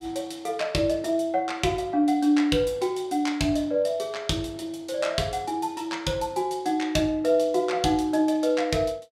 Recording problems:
none

